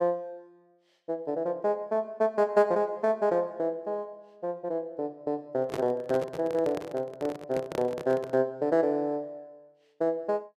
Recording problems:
handling noise; from 5.5 to 8.5 s; peak -2 dB vs average level

